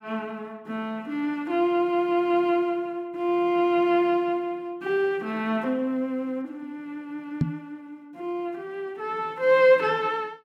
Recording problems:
microphone bump; at 7.5 s; peak +5 dB vs average level

